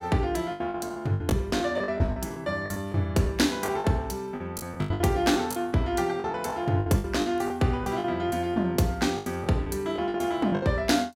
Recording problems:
lost packets; 15% of the sound replaced, filled with the last packet

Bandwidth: 16.5 kHz